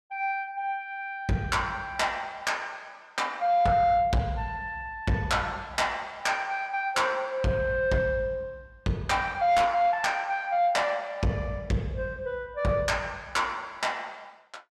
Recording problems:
distortion; soft clipping, signal-to-distortion ratio 12 dB

